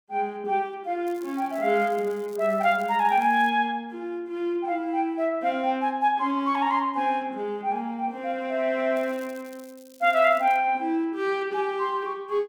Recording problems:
crackling; from 1 to 3.5 s and from 9 to 11 s; loose cable, SNR 27 dB

